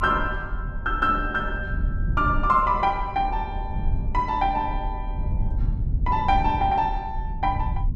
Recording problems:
low-frequency rumble; below 88 Hz, SNR 6 dB

